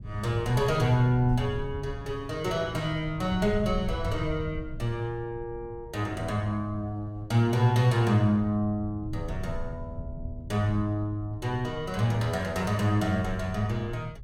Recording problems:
low-frequency rumble; below 110 Hz, SNR 12 dB

